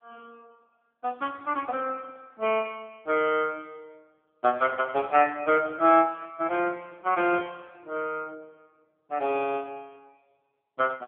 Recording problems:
telephone audio; 170 Hz to 3.3 kHz, AMR-NB

